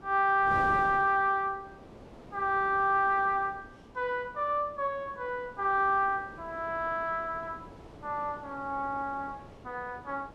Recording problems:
wind on the microphone; below 680 Hz, SNR 19 dB

